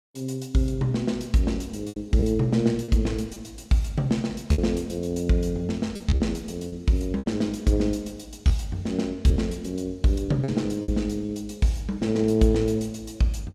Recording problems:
packet loss; 5% of the sound replaced, filled with repeated pitch periods

